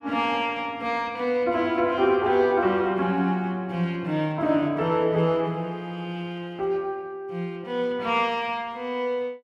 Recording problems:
none

